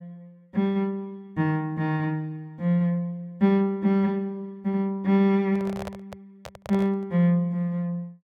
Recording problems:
microphone handling noise; from 5.5 to 7 s; peak -7 dB vs average level

